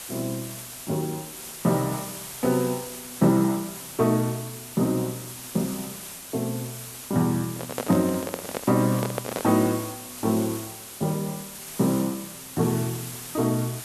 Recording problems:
background hiss; slope 0 dB per octave, SNR 10 dB
handling noise; from 7.5 to 9.5 s; peak +1 dB vs average level

